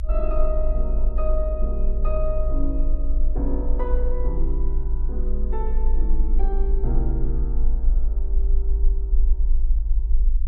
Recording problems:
rumble; below 50 Hz, strongest tone 22 Hz, SNR -7 dB

